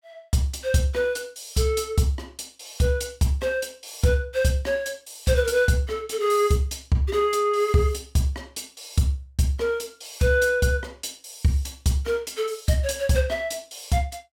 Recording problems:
none

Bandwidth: 17.5 kHz